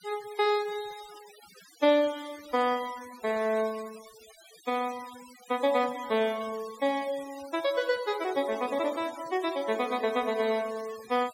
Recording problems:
denoising artefacts; signal-to-artefact ratio 18 dB

